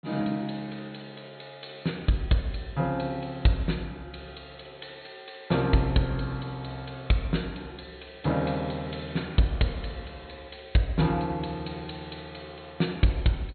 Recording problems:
treble cut off; nothing above 4.3 kHz

